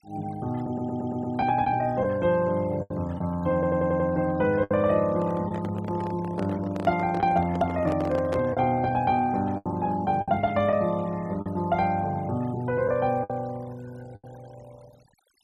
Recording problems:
denoising artefacts; signal-to-artefact ratio 25 dB
packet loss; 5% of the sound replaced, filled with the last packet
audio stuttering; at 0.5 s and at 3.5 s
handling noise; from 5 to 8.5 s; peak -1 dB vs average level

